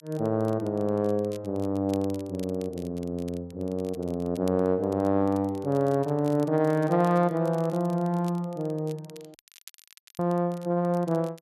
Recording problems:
crackle; vinyl, SNR 25 dB
audio cutting out; at 9.5 s for 1 s

